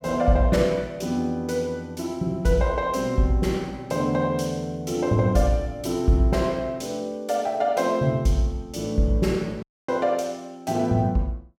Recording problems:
dropout; at 9.5 s

